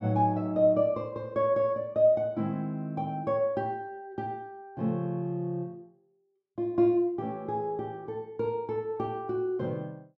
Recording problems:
none

